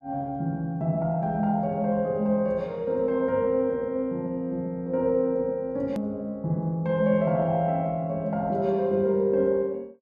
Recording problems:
click at an edit; at 6 s

